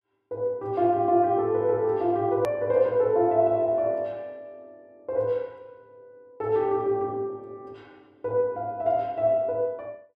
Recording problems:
click at an edit; at 2.5 s

